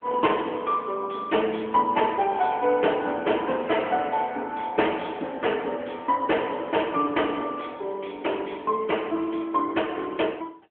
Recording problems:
telephone audio; 240 Hz to 3.2 kHz, AMR-NB

